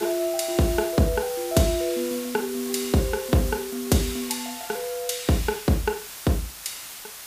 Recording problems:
hiss; slope +1 dB per octave, SNR 10 dB

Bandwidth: 15 kHz